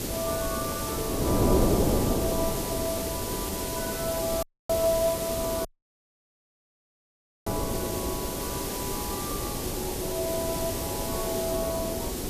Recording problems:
hiss; slope +2 dB per octave, SNR 1 dB
wind noise; below 480 Hz, SNR -1 dB
audio cutting out; at 4.5 s and at 5.5 s for 2 s

